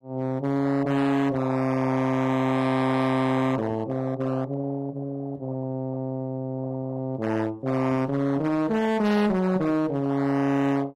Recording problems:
lossy codec; AAC, log-spectral distance 2 dB, nothing above 13.1 kHz
distortion; hard clipping, signal-to-distortion ratio 7 dB

